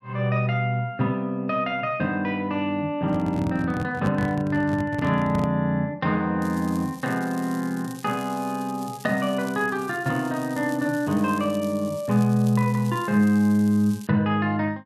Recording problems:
handling noise; from 3 to 5.5 s; peak -1 dB vs average level
crackle; from 6.5 to 14 s; loose cable, SNR 21 dB

